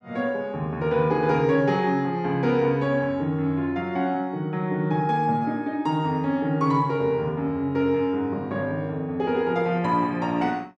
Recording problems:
none

